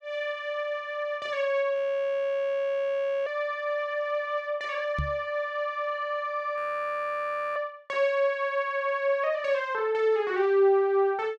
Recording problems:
frozen audio; at 2 s for 1.5 s and at 6.5 s for 1 s
microphone bump; at 5 s; peak 0 dB vs average level

